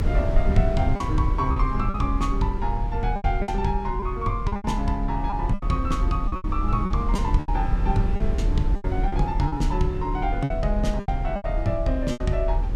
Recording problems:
low-frequency rumble; below 66 Hz, strongest tone 38 Hz, SNR 0 dB
packet loss; 10% of the sound replaced, filled with repeated pitch periods

